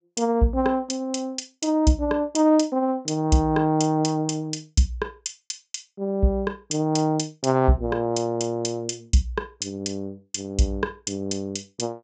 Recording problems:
low-pass filter; nothing above 8 kHz

